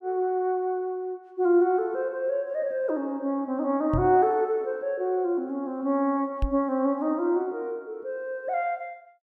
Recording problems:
microphone thump; at 4 s and at 6.5 s; peak +2 dB vs average level

